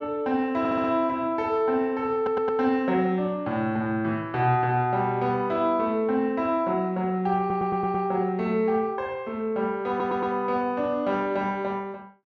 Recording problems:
stutter; 4 times, first at 0.5 s

